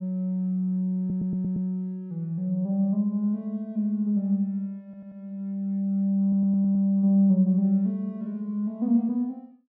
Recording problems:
audio stuttering; at 1 s, at 5 s and at 6 s

